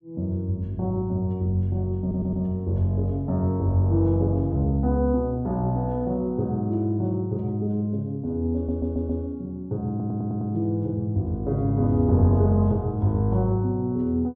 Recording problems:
stutter; at 2 s, at 8.5 s and at 10 s

